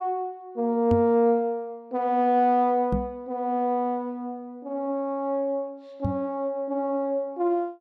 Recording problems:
knock on the microphone; at 1 s, at 3 s and at 6 s; peak +2 dB vs average level

